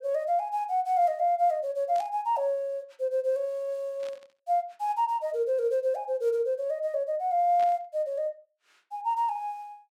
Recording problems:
static burst; at 2 s, at 4 s and at 7.5 s; peak -14 dB vs average level

